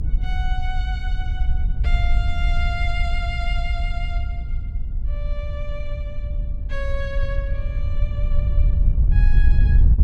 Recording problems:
electrical hum; 50 Hz, harmonics up to 300 Hz, SNR 12 dB
wind on the microphone; below 64 Hz, SNR -9 dB

